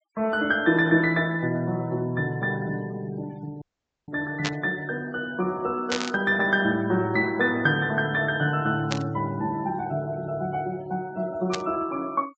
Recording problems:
low-pass filter; nothing above 8 kHz
denoising artefacts; signal-to-artefact ratio 23 dB
dropout; at 3.5 s
burst of static; 4 times, first at 4.5 s; peak +2 dB vs average level

